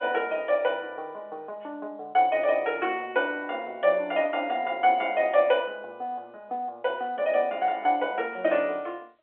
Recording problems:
telephone audio; 340 Hz to 3.4 kHz, G.711

